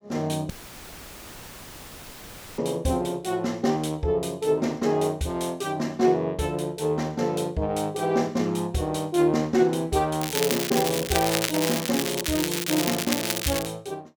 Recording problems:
audio cutting out; at 0.5 s for 2 s; filled with static
crackle; from 10 to 14 s; loose cable, SNR 2 dB

